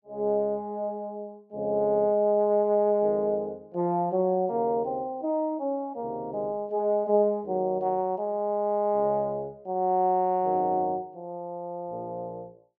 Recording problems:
none

